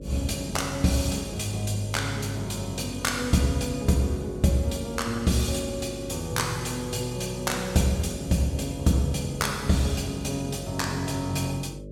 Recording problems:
hum; 50 Hz, harmonics up to 600 Hz, SNR 13 dB

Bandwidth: 17 kHz